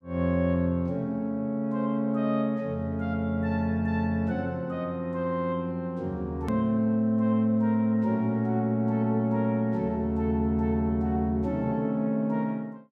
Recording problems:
click at an edit; at 6.5 s

